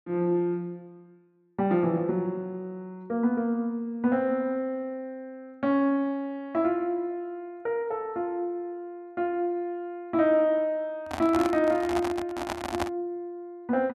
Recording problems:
microphone handling noise; from 11 to 13 s; peak +2 dB vs average level

